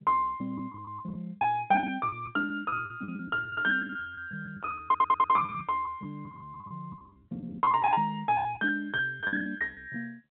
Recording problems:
phone line; 170 Hz to 3.6 kHz, G.711
lost packets; 14% of the sound replaced, filled with the last packet
audio stuttering; at 5 s

